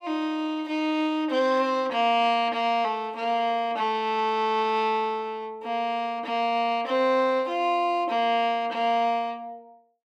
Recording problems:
none

